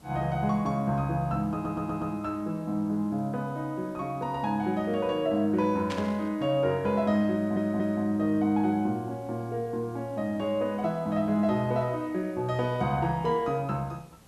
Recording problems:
hiss; slope -4 dB per octave, SNR 27 dB
audio stuttering; at 1.5 s and at 7.5 s
static burst; at 6 s; peak -5 dB vs average level

